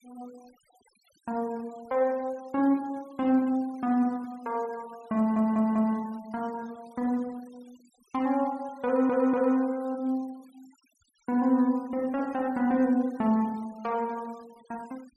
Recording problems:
noise reduction artefacts; signal-to-artefact ratio 28 dB
stutter; at 5 s and at 9 s

